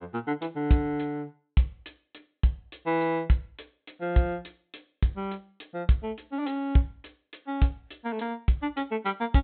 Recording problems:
treble cut off; nothing above 4 kHz

